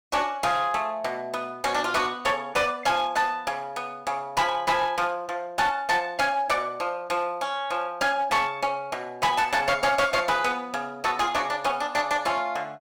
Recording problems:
distortion; hard clipping, uneven, signal-to-distortion ratio 11 dB

